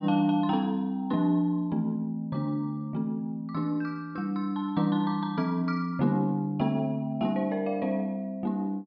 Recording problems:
low-pass filter; nothing above 5.5 kHz

